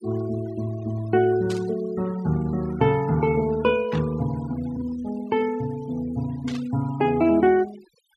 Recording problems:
denoising artefacts; signal-to-artefact ratio 21 dB
static burst; at 1.5 s, at 4 s and at 6.5 s; peak -9 dB vs average level

